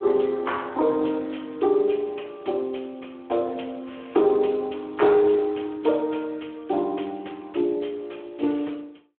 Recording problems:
telephone audio; 260 Hz to 3.3 kHz, Speex

